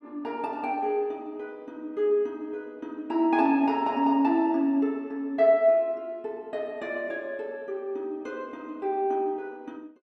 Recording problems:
none

